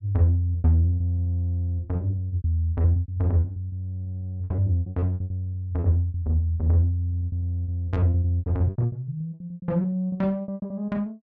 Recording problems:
packet loss; 20% of the sound replaced, filled with repeated pitch periods

